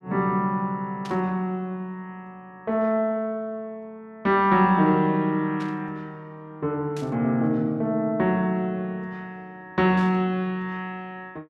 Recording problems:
static burst; 4 times, first at 1 s; peak -12 dB vs average level

